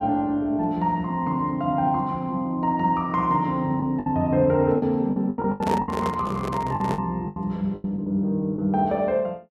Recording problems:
packet loss; 8% of the sound replaced, filled with the last packet
handling noise; from 5.5 to 7 s; peak 0 dB vs average level

